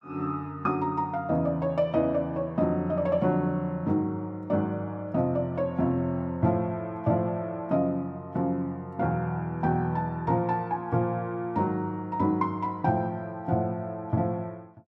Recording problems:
none

